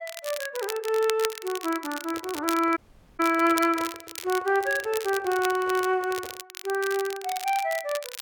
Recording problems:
crackle; vinyl, SNR 11 dB
microphone handling noise; from 2 to 6.5 s; peak -10 dB vs average level
dropout; at 3 s

